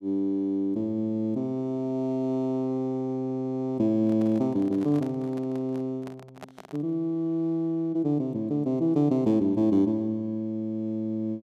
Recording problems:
handling noise; from 4 to 7 s; peak -11 dB vs average level

